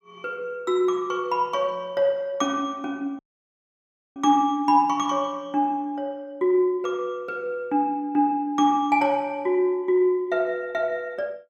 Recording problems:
dropout; at 3 s for 1 s

